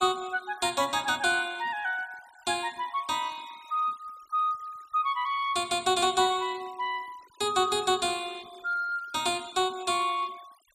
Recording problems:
denoising artefacts; signal-to-artefact ratio 23 dB

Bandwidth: 15.5 kHz